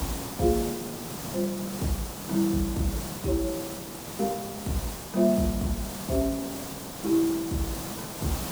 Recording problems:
hiss; SNR 6 dB

